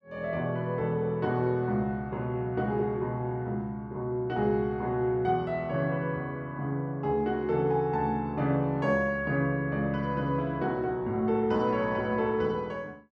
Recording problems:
none

